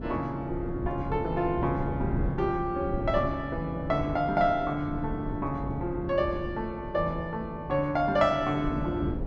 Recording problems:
wind noise; below 270 Hz, SNR 7 dB

